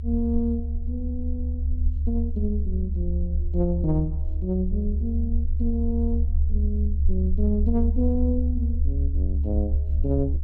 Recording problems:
rumble; below 74 Hz, strongest tone 72 Hz, SNR -3 dB

